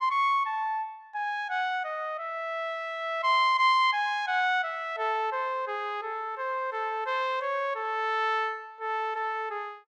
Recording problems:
none

